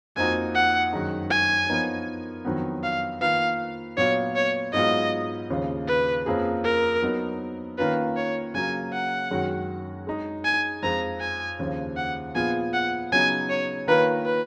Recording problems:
none

